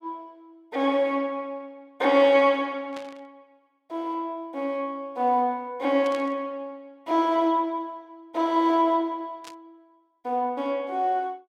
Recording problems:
burst of static; at 3 s, at 6 s and at 9.5 s; peak -13 dB vs average level

